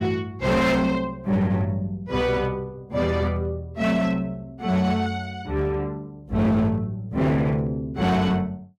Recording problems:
distorted audio; hard clipping, signal-to-distortion ratio 10 dB

